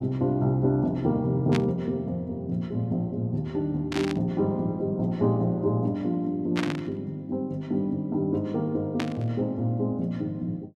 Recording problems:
burst of static; 4 times, first at 1.5 s; peak 0 dB vs average level

